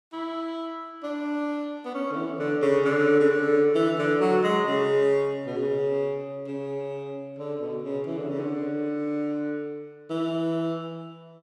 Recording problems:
none

